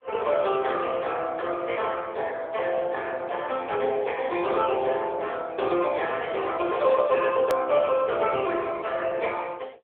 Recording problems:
telephone audio; 320 Hz to 3.4 kHz, AMR-NB
click at an edit; at 7.5 s

